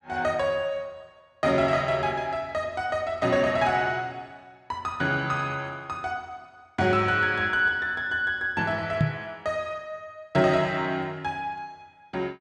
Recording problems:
microphone bump; at 9 s; peak +6 dB vs average level

